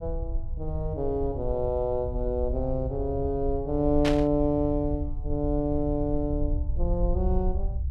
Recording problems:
rumble; below 68 Hz, SNR 5 dB
burst of static; at 4 s; peak +1 dB vs average level

